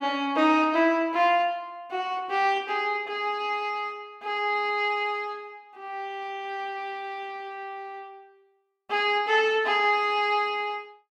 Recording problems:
none

